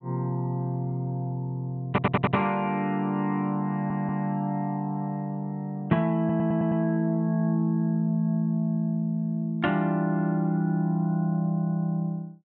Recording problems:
audio stuttering; at 2 s, at 3.5 s and at 6 s

